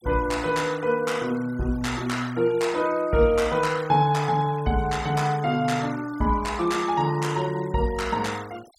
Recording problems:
denoising artefacts; signal-to-artefact ratio 20 dB

